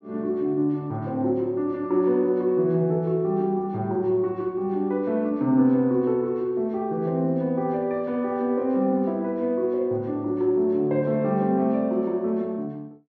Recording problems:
treble missing; nothing above 7.1 kHz

